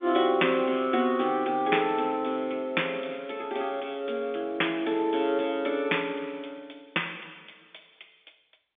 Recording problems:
phone line; 190 Hz to 3.6 kHz, G.711

